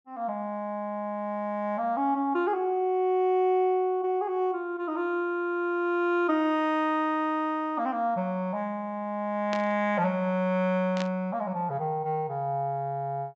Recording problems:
low-pass filter; nothing above 8 kHz
burst of static; at 9.5 s and at 11 s; peak -4 dB vs average level

